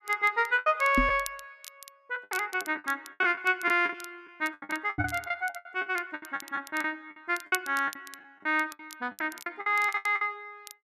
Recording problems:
crackling; vinyl, SNR 19 dB
lost packets; 18% of the sound replaced, filled with the last packet
microphone thump; at 1 s and at 5 s; peak +5 dB vs average level

